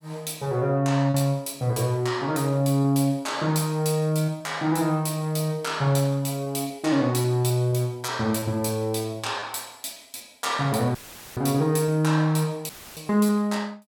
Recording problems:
packet loss; 4% of the sound replaced, filled with repeated pitch periods
audio cutting out; at 11 s and at 13 s; filled with static

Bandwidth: 17 kHz